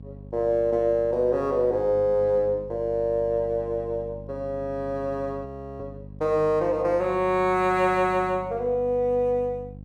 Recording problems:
hum; 50 Hz, harmonics up to 550 Hz, SNR 17 dB
frozen audio; at 5.5 s

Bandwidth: 13.5 kHz